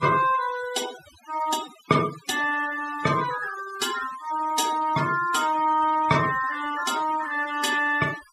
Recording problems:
denoising artefacts; signal-to-artefact ratio 13 dB

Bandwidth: 14.5 kHz